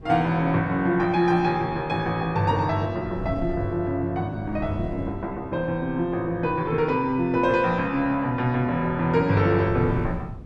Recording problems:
wind noise; below 190 Hz, SNR 16 dB

